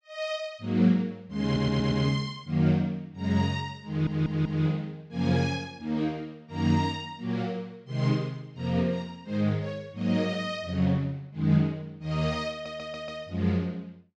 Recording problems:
stutter; at 1.5 s, at 4 s and at 13 s

